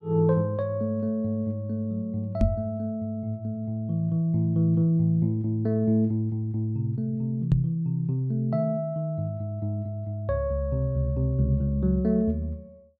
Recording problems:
microphone bump; at 2.5 s and at 7.5 s; peak +7 dB vs average level

